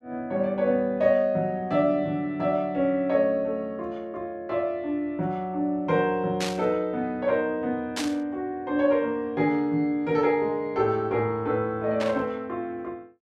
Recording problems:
burst of static; at 6.5 s, at 8 s and at 12 s; peak -1 dB vs average level

